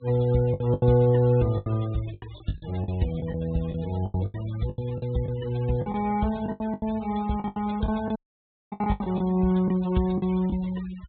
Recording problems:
treble missing; nothing above 4 kHz
denoising artefacts; signal-to-artefact ratio 20 dB
lost packets; 14% of the sound replaced, filled with the last packet
dropout; at 8 s for 0.5 s

